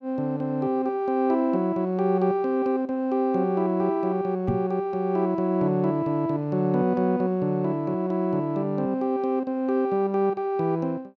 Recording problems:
microphone thump; at 4.5 s; peak +2 dB vs average level

